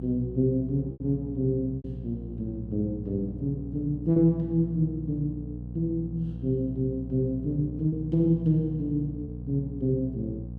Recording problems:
hum; 60 Hz, harmonics up to 540 Hz, SNR 10 dB
packet loss; 3% of the sound replaced, filled with repeated pitch periods

